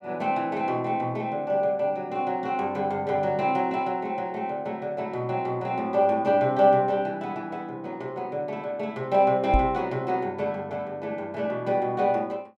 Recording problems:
microphone thump; at 9.5 s; peak +5 dB vs average level

